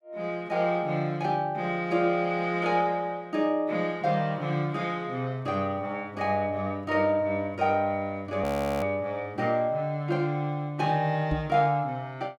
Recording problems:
frozen audio; at 8.5 s
microphone thump; at 11 s; peak -1 dB vs average level

